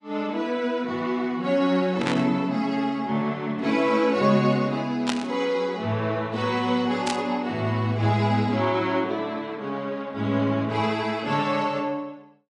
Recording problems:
codec artefacts; AAC, log-spectral distance 2 dB, nothing above 10.1 kHz
burst of static; at 2 s, at 5 s and at 7 s; peak +1 dB vs average level

